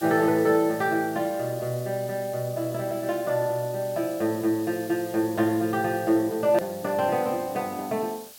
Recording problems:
background hiss; slope +1 dB per octave, SNR 18 dB
hard cut with a click; at 6.5 s

